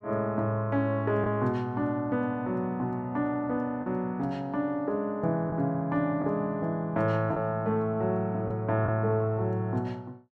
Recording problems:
lost packets; 1.6% of the sound replaced, filled with the last packet

